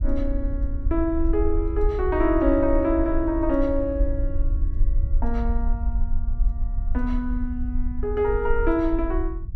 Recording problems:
low-frequency rumble; below 54 Hz, SNR 3 dB

